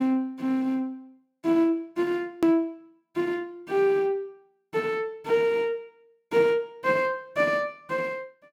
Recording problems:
hard cut with a click; at 2.5 s

